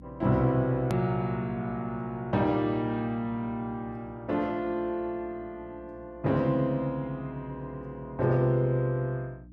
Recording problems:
hum; 60 Hz, harmonics up to 300 Hz, SNR 22 dB
edit click; at 1 s

